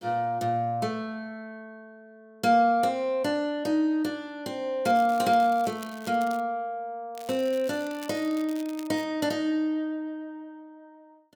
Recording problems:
crackle; from 5 to 6.5 s and from 7 to 9 s; loose cable, SNR 21 dB

